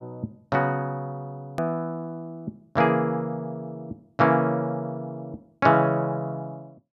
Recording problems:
click at an edit; at 1.5 s

